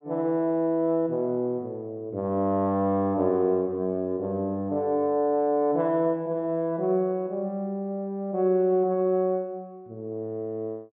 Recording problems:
low-pass filter; nothing above 4 kHz

